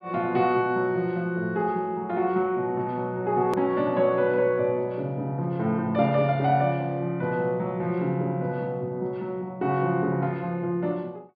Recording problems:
treble cut off; nothing above 5.5 kHz
hard cut with a click; at 3.5 s

